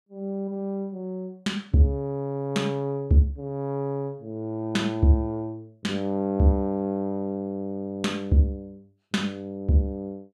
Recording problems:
none

